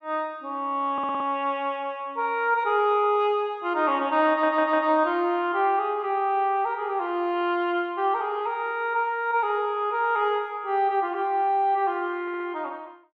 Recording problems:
stutter; at 1 s, at 4.5 s and at 12 s

